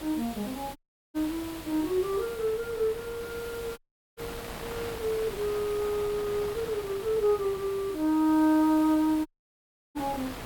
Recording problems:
electrical hum; 50 Hz, harmonics up to 500 Hz, SNR 25 dB
hiss; SNR 17 dB
wind on the microphone; below 1.7 kHz, SNR 15 dB
dropout; at 1 s, at 4 s and at 9.5 s for 0.5 s

